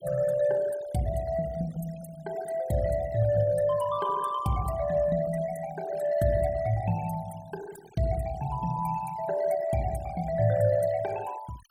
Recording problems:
noise reduction artefacts; signal-to-artefact ratio 20 dB

